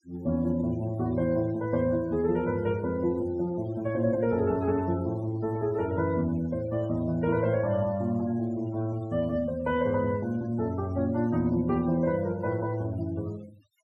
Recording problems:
noise reduction artefacts; signal-to-artefact ratio 25 dB

